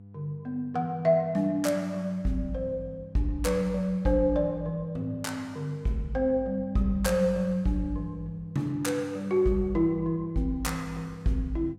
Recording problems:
hum; 50 Hz, harmonics up to 500 Hz, SNR 20 dB

